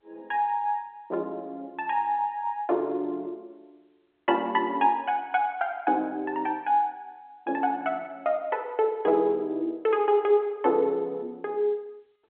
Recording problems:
telephone audio; 260 Hz to 3.5 kHz, G.711

